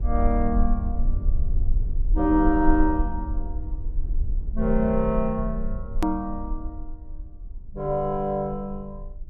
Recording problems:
rumble; below 50 Hz, strongest tone 18 Hz, SNR 3 dB
edit click; at 6 s

